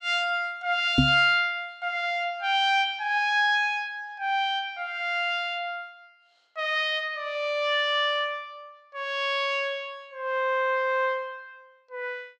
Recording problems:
knock on the microphone; at 1 s; peak +8 dB vs average level

